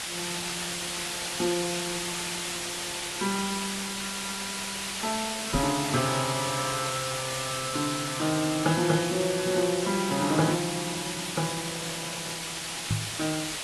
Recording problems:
lossy codec; AAC, log-spectral distance 15 dB
hiss; slope +1 dB per octave, SNR 1 dB
knock on the microphone; at 5.5 s and at 13 s; peak +5 dB vs average level

